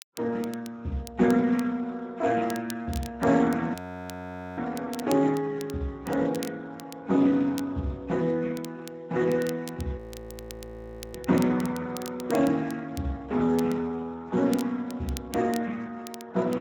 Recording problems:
codec artefacts; MP3, then Speex, log-spectral distance 4 dB, nothing above 17.1 kHz
crackle; vinyl, SNR 18 dB
frozen audio; at 3.5 s for 1 s and at 10 s for 1 s

